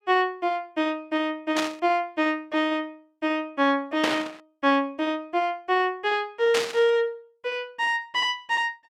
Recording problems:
burst of static; at 1.5 s, at 4 s and at 6.5 s; peak +3 dB vs average level

